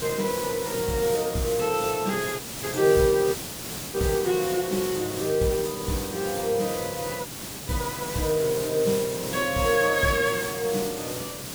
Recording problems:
hiss; SNR 7 dB
dropout; at 2.5 s, at 3.5 s for 0.5 s and at 7.5 s

